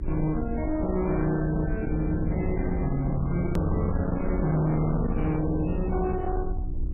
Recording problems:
lossy codec; MP3, log-spectral distance 2 dB, nothing above 13.1 kHz
distortion; hard clipping, signal-to-distortion ratio 7 dB
mains hum; 60 Hz, harmonics up to 360 Hz, SNR 11 dB
rumble; below 100 Hz, SNR 6 dB
edit click; at 3.5 s

